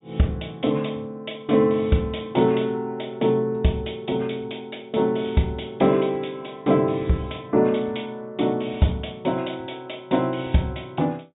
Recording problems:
low-pass filter; nothing above 4 kHz

